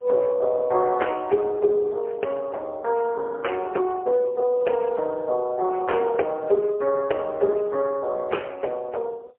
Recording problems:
phone line; 320 Hz to 3.1 kHz, AMR-NB, then MP3

